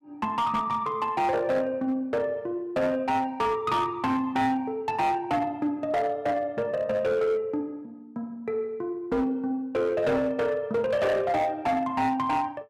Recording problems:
distorted audio; hard clipping, signal-to-distortion ratio 11 dB

